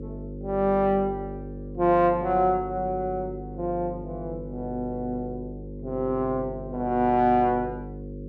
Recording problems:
hum; 50 Hz, harmonics up to 550 Hz, SNR 11 dB

